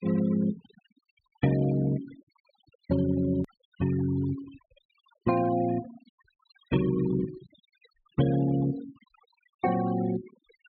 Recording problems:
low-pass filter; nothing above 4.3 kHz
noise reduction artefacts; signal-to-artefact ratio 16 dB
hard cut with a click; at 3.5 s

